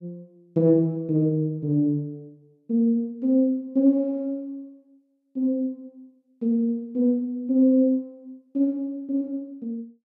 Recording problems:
none

